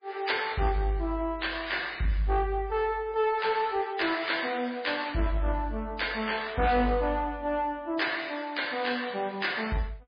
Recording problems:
lossy codec; MP3, log-spectral distance 5 dB, nothing above 4.4 kHz
distortion; soft clipping, signal-to-distortion ratio 12 dB

